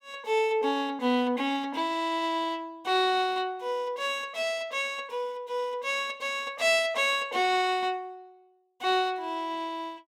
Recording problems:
none

